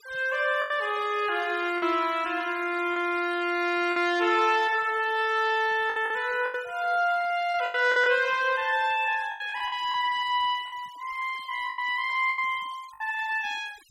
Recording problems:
noise reduction artefacts; signal-to-artefact ratio 21 dB
lost packets; 7% of the sound replaced, filled with the last packet

